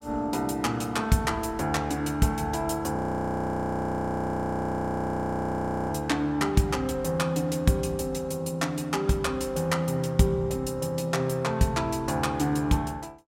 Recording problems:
audio freezing; at 3 s for 3 s

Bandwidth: 16 kHz